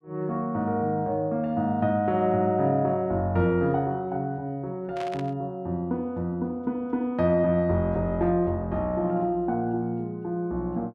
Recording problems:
burst of static; at 5 s; peak -9 dB vs average level

